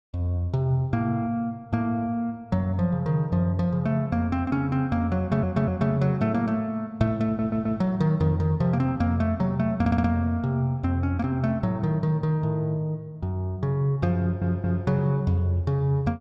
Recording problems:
stutter; 4 times, first at 5 s

